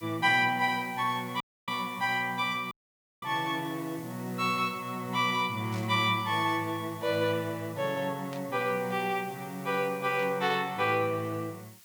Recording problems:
hiss; slope +2 dB per octave, SNR 21 dB
dropout; at 1.5 s and at 2.5 s for 0.5 s
static burst; at 5.5 s, at 8.5 s and at 10 s; peak -12 dB vs average level

